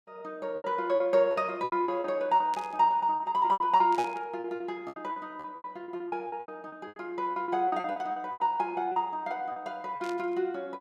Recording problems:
packet loss; 16% of the sound replaced, filled with repeated pitch periods
static burst; at 2.5 s, at 4 s and at 10 s; peak -9 dB vs average level

